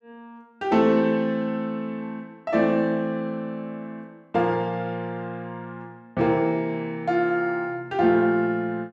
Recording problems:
none

